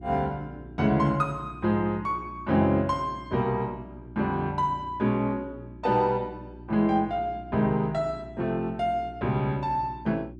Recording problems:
hum; 60 Hz, harmonics up to 360 Hz, SNR 17 dB

